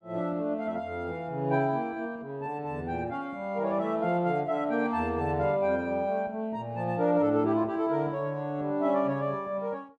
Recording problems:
none

